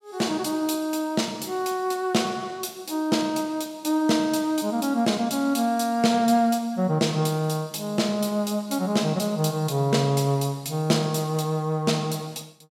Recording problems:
none

